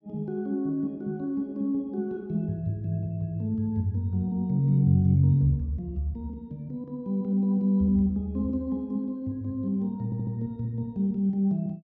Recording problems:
audio stuttering; at 10 s

